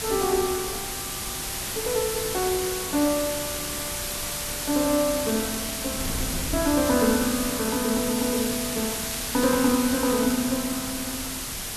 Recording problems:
hiss; slope 0 dB per octave, SNR 3 dB
wind on the microphone; below 210 Hz, SNR 14 dB
crackle; from 5 to 6.5 s and from 8 to 11 s; loose cable, SNR 16 dB

